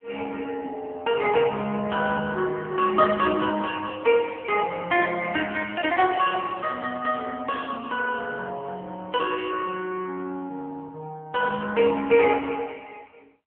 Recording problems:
phone line; 170 Hz to 3.3 kHz, AMR-NB

